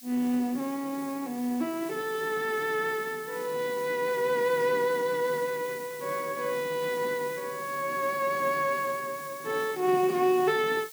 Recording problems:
hiss; slope +6 dB per octave, SNR 16 dB

